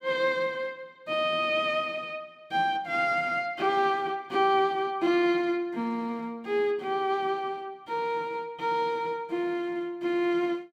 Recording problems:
none

